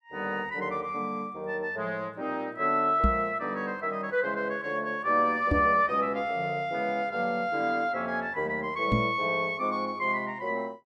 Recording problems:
microphone bump; at 3 s, at 5.5 s and at 9 s; peak +6 dB vs average level

